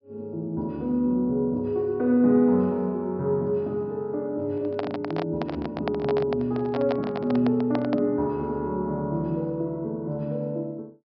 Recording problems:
treble cut off; nothing above 5.5 kHz
handling noise; from 4.5 to 8 s; peak 0 dB vs average level

